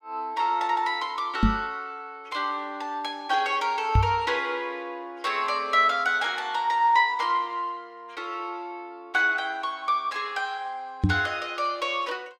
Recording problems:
knock on the microphone; at 1.5 s, at 4 s and at 11 s; peak +8 dB vs average level

